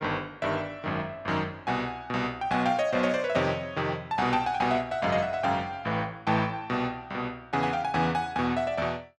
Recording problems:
none

